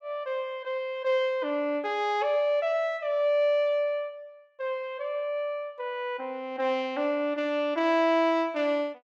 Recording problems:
none

